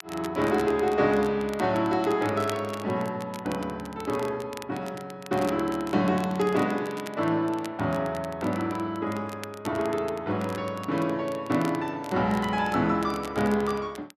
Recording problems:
crackle; vinyl, SNR 19 dB

